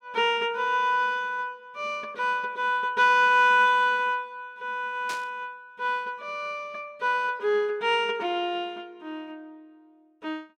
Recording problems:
burst of static; at 5 s; peak -7 dB vs average level

